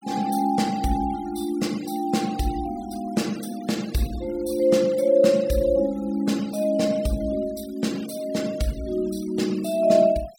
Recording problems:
denoising artefacts; signal-to-artefact ratio 20 dB

